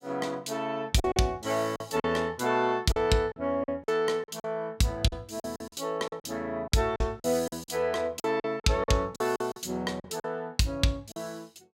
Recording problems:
packet loss; 11% of the sound replaced, filled with silence

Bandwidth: 16 kHz